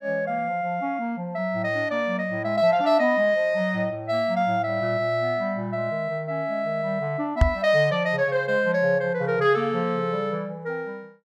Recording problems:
microphone bump; at 7.5 s; peak +8 dB vs average level

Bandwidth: 13.5 kHz